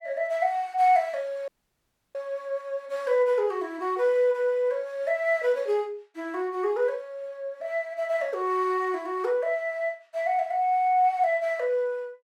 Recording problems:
audio cutting out; at 1.5 s for 0.5 s

